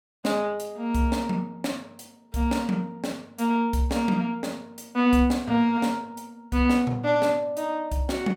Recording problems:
none

